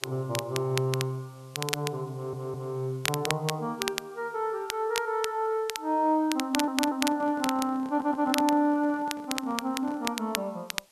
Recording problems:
hiss; slope -1 dB per octave, SNR 29 dB
crackle; vinyl, SNR 6 dB
stutter; at 2 s, at 6.5 s and at 8 s
microphone handling noise; from 6.5 to 10 s; peak -10 dB vs average level

